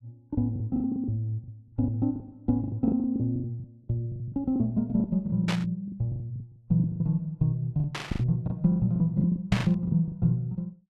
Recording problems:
lost packets; 18% of the sound replaced, filled with the last packet
burst of static; at 5.5 s, at 8 s and at 9.5 s; peak 0 dB vs average level

